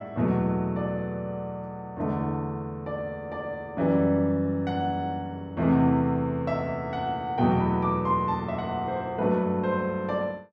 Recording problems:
none

